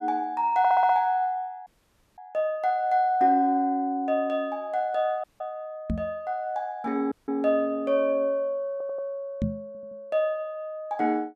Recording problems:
audio stuttering; at 0.5 s, at 8.5 s and at 9.5 s
audio cutting out; at 1.5 s for 0.5 s, at 5 s and at 7 s
microphone bump; at 6 s and at 9.5 s; peak +2 dB vs average level

